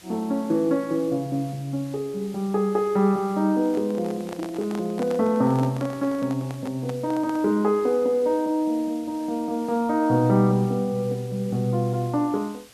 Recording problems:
background hiss; slope 0 dB per octave, SNR 24 dB
handling noise; from 3.5 to 7.5 s; peak -8 dB vs average level

